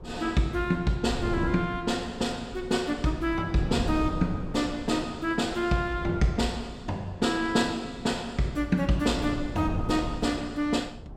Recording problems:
wind on the microphone; below 250 Hz, SNR 10 dB

